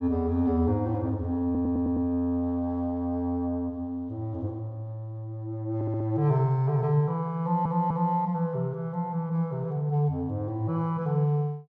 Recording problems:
stutter; at 1.5 s, at 6 s and at 7.5 s

